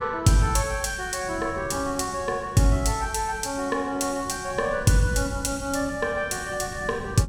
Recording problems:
wind noise; below 200 Hz, SNR 16 dB

